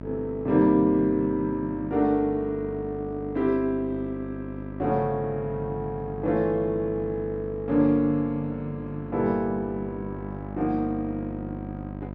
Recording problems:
hum; 50 Hz, harmonics up to 1.3 kHz, SNR 11 dB

